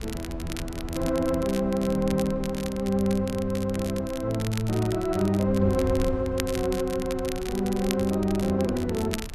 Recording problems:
wind noise; below 110 Hz, SNR 13 dB
crackling; vinyl, SNR 14 dB

